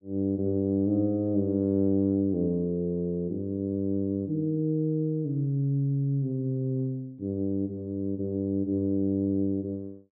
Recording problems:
treble missing; nothing above 4.2 kHz

